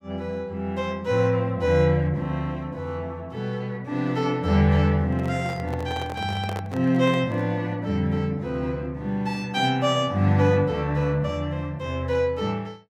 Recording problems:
microphone handling noise; from 5 to 7.5 s; peak -6 dB vs average level

